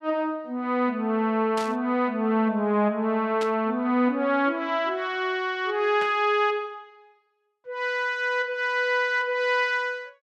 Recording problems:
burst of static; at 1.5 s, at 3.5 s and at 6 s; peak -7 dB vs average level

